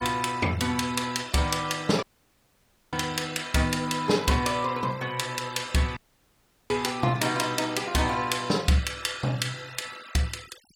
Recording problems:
denoising artefacts; signal-to-artefact ratio 19 dB
audio cutting out; at 2 s for 1 s and at 6 s for 0.5 s

